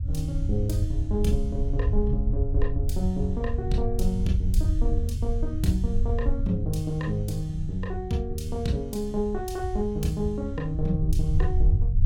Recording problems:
rumble; below 84 Hz, SNR -1 dB

